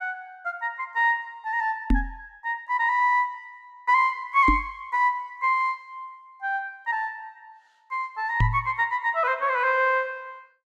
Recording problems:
knock on the microphone; at 2 s, at 4.5 s and at 8.5 s; peak +5 dB vs average level

